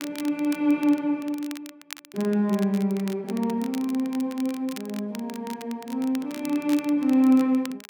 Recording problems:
crackle; vinyl, SNR 18 dB

